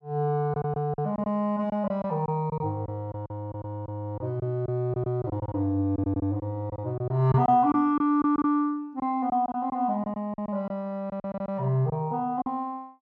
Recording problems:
packet loss; 10% of the sound replaced, filled with silence

